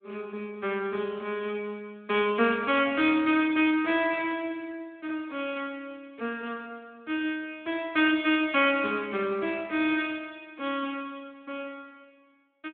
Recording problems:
phone line; 240 Hz to 3.6 kHz, Speex

